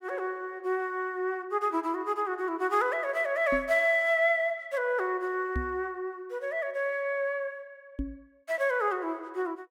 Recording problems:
microphone bump; at 3.5 s, at 5.5 s and at 8 s; peak 0 dB vs average level

